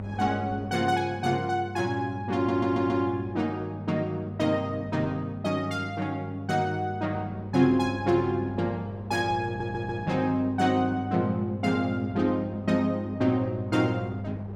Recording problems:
electrical hum; 50 Hz, harmonics up to 600 Hz, SNR 9 dB
wind on the microphone; below 550 Hz, SNR 21 dB
stutter; at 2.5 s and at 9.5 s

